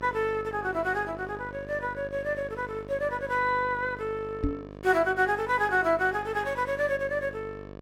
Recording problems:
hum; 50 Hz, harmonics up to 2.4 kHz, SNR 15 dB
microphone bump; at 4.5 s; peak +3 dB vs average level

